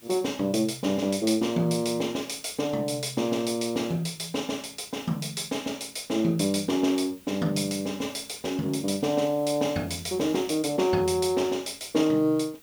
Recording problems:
background hiss; SNR 23 dB

